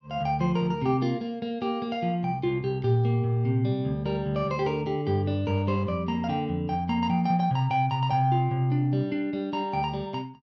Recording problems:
none

